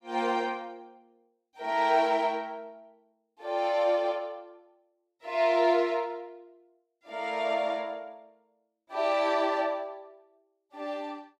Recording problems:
none

